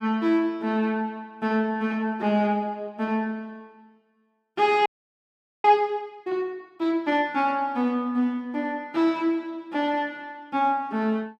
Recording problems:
audio freezing; at 5 s for 1 s

